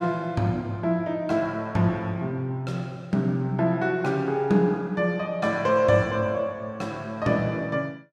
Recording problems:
none

